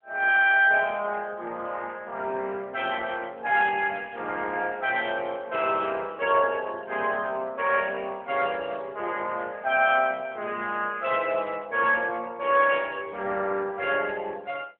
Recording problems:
phone line; 300 Hz to 3.1 kHz, AMR-NB

